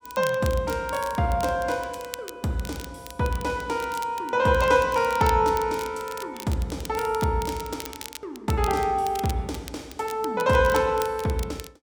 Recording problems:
crackle; vinyl, SNR 16 dB

